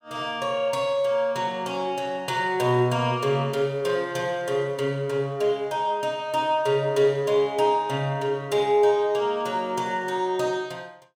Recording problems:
none

